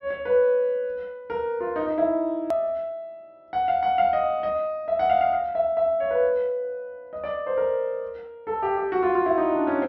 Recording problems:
treble missing; nothing above 6.1 kHz
click at an edit; at 2.5 s

